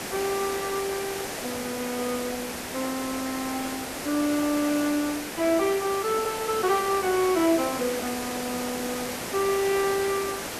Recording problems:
hiss; slope -4 dB per octave, SNR 5 dB

